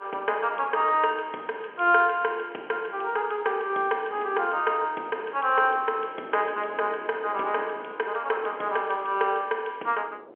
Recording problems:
telephone audio; 320 Hz to 3.3 kHz, G.711
wind noise; below 640 Hz, SNR 22 dB

